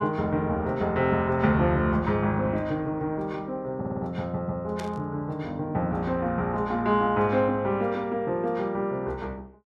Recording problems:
audio stuttering; at 4 s
static burst; at 5 s; peak -10 dB vs average level

